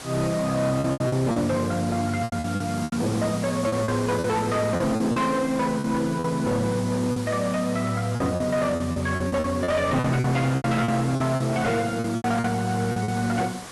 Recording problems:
codec artefacts; AAC, log-spectral distance 5 dB, nothing above 11.6 kHz
distortion; hard clipping, signal-to-distortion ratio 11 dB
background hiss; slope -3 dB per octave, SNR 14 dB
lost packets; 12% of the sound replaced, filled with repeated pitch periods

